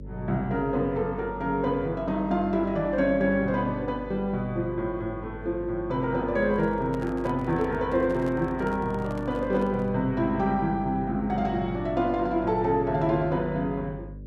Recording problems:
hum; 50 Hz, harmonics up to 550 Hz, SNR 15 dB
handling noise; from 6.5 to 10 s; peak -9 dB vs average level

